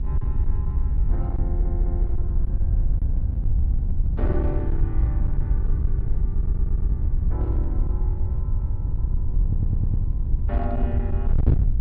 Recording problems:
treble cut off; nothing above 5.5 kHz
distortion; hard clipping, uneven, signal-to-distortion ratio 5 dB
hum; 50 Hz, harmonics up to 900 Hz, SNR 21 dB
wind on the microphone; below 80 Hz, SNR -11 dB
stutter; at 1.5 s, at 6.5 s and at 9.5 s

